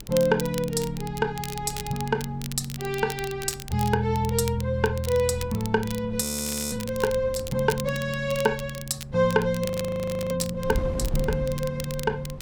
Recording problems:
wind noise; below 140 Hz, SNR 14 dB
crackling; vinyl, SNR 13 dB
audio freezing; at 6 s for 0.5 s and at 9.5 s for 0.5 s

